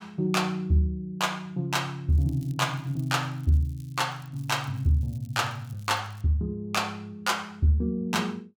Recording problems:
crackle; from 2 to 4.5 s and from 4.5 to 6 s; loose cable, SNR 29 dB

